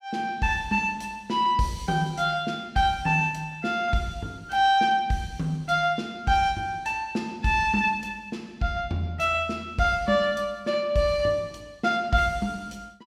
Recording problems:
none

